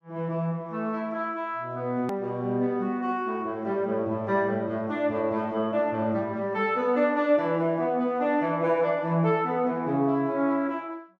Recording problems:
edit click; at 2 s

